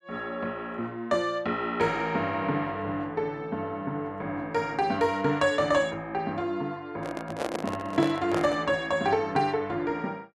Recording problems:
handling noise; from 7 to 8.5 s; peak +1 dB vs average level

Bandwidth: 12 kHz